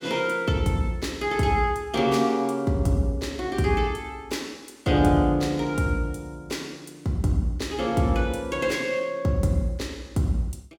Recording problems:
none

